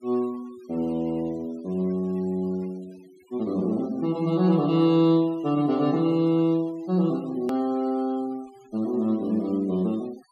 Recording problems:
denoising artefacts; signal-to-artefact ratio 26 dB
click at an edit; at 7.5 s

